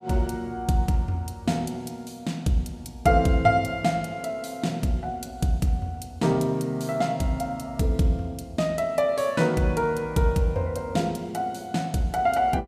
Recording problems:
none

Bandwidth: 15 kHz